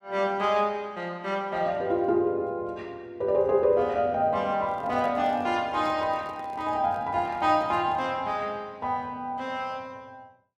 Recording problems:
handling noise; from 4.5 to 8 s; peak -11 dB vs average level

